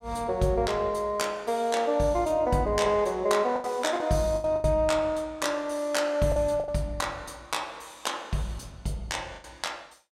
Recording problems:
lost packets; 5% of the sound replaced, filled with the last packet

